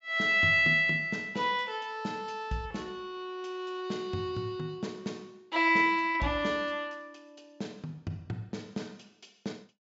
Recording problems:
low-pass filter; nothing above 8 kHz

